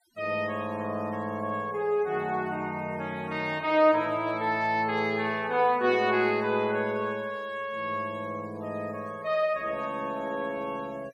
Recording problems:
noise reduction artefacts; signal-to-artefact ratio 26 dB

